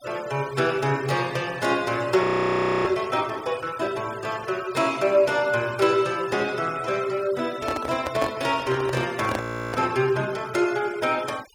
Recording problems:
denoising artefacts; signal-to-artefact ratio 18 dB
frozen audio; at 2 s for 0.5 s and at 9.5 s
handling noise; from 7.5 to 10 s; peak 0 dB vs average level

